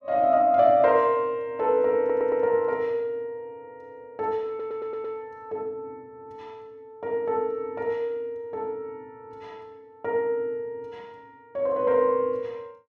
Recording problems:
stutter; at 2 s and at 4.5 s

